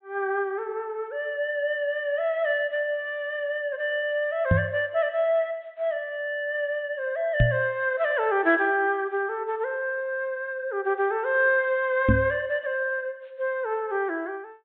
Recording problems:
treble missing; nothing above 4 kHz
microphone thump; at 4.5 s, at 7.5 s and at 12 s; peak +8 dB vs average level

